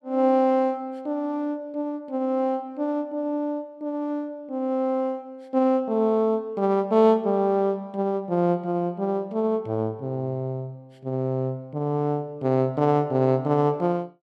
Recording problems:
none

